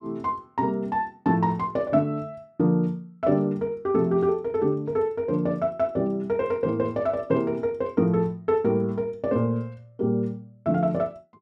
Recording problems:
none

